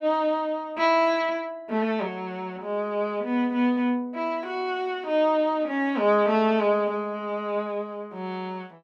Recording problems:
none

